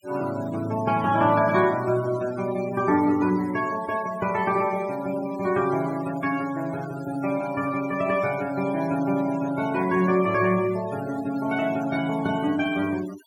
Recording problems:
denoising artefacts; signal-to-artefact ratio 18 dB

